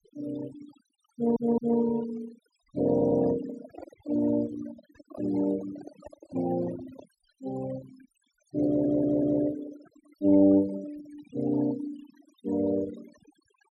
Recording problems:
noise reduction artefacts; signal-to-artefact ratio 16 dB
stutter; at 1 s, at 3 s and at 8.5 s
microphone handling noise; from 3 to 7 s; peak -10 dB vs average level

